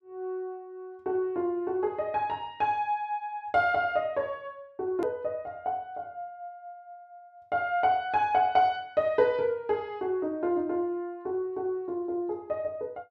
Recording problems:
click at an edit; at 5 s

